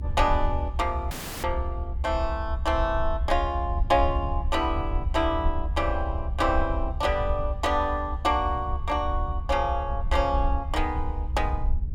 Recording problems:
rumble; below 72 Hz, SNR 3 dB
dropout; at 1 s

